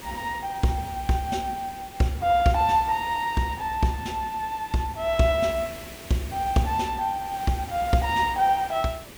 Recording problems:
background hiss; SNR 16 dB

